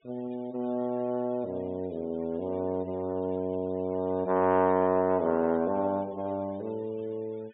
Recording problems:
treble cut off; nothing above 4 kHz
noise reduction artefacts; signal-to-artefact ratio 28 dB

